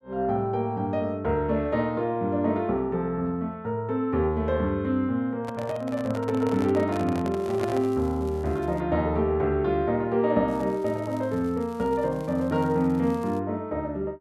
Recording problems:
handling noise; from 5.5 to 8 s; peak -4 dB vs average level
crackling; from 7.5 to 9 s and from 10 to 13 s; loose cable, SNR 28 dB

